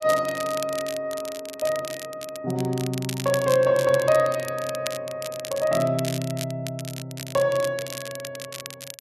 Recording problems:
crackling; vinyl, SNR 11 dB

